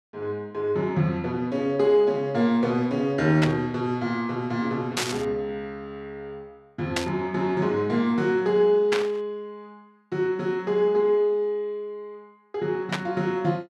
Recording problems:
burst of static; 5 times, first at 3.5 s; peak +2 dB vs average level

